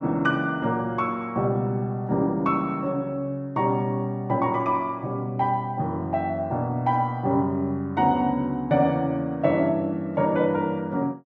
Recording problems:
none

